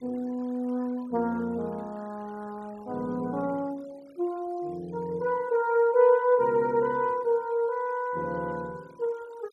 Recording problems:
noise reduction artefacts; signal-to-artefact ratio 26 dB

